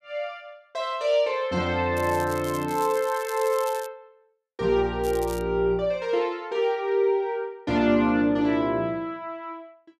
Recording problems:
crackling; from 2 to 4 s and at 5 s; loose cable, SNR 17 dB

